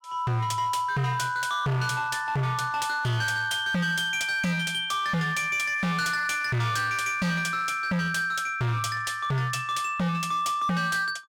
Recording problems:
distorted audio; hard clipping, signal-to-distortion ratio 7 dB

